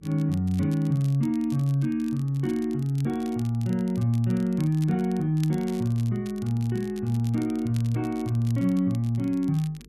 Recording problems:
hum; 50 Hz, harmonics up to 450 Hz, SNR 27 dB
crackle; vinyl, SNR 24 dB

